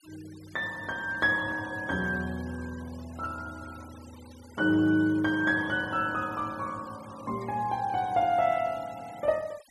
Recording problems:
noise reduction artefacts; signal-to-artefact ratio 23 dB

